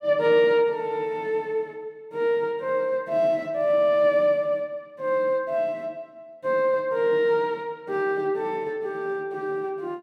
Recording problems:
none

